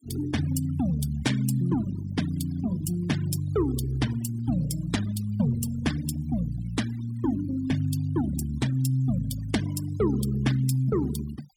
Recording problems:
noise reduction artefacts; signal-to-artefact ratio 16 dB

